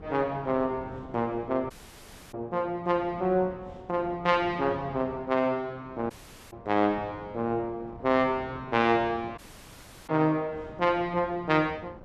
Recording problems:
wind on the microphone; below 470 Hz, SNR 19 dB
audio cutting out; at 1.5 s for 0.5 s, at 6 s and at 9.5 s for 0.5 s

